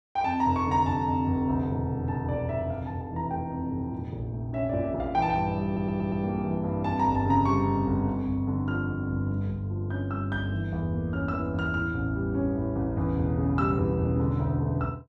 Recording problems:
audio stuttering; at 5.5 s

